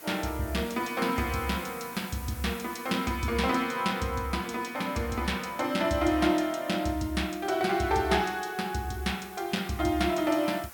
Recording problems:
hiss; SNR 17 dB

